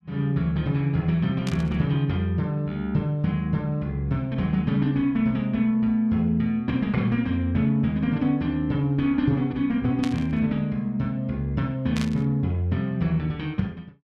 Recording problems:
static burst; at 1.5 s, at 10 s and at 12 s; peak -5 dB vs average level

